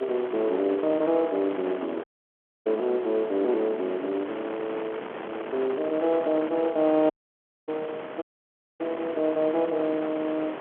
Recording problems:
phone line; 280 Hz to 3.6 kHz, G.711
hiss; SNR 27 dB
wind noise; below 1.3 kHz, SNR 11 dB
dropout; at 2 s for 0.5 s, at 7 s for 0.5 s and at 8 s for 0.5 s

